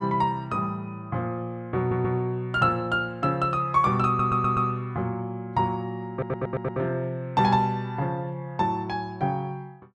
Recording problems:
stutter; at 2 s, at 4 s and at 6 s

